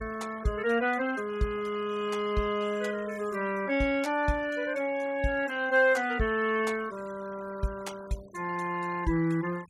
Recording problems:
noise reduction artefacts; signal-to-artefact ratio 21 dB

